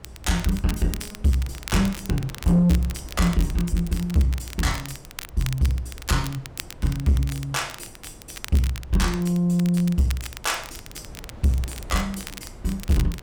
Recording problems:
distorted audio; soft clipping, signal-to-distortion ratio 10 dB
wind noise; below 310 Hz, SNR 20 dB
crackle; vinyl, SNR 15 dB

